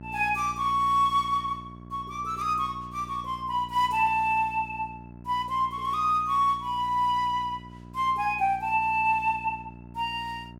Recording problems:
hum; 60 Hz, harmonics up to 1 kHz, SNR 18 dB

